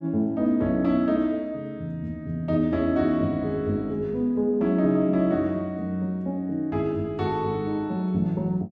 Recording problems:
none

